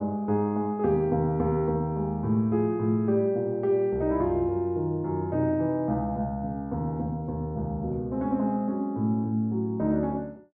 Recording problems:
none

